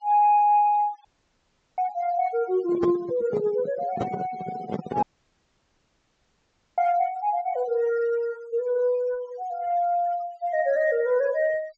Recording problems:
low-pass filter; nothing above 8 kHz
noise reduction artefacts; signal-to-artefact ratio 19 dB
dropout; at 1 s for 0.5 s and at 5 s for 2 s
microphone handling noise; from 2.5 to 5 s; peak 0 dB vs average level

